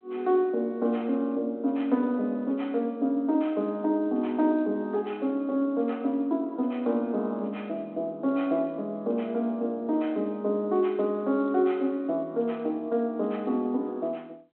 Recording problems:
telephone audio; 220 Hz to 3.3 kHz, G.726

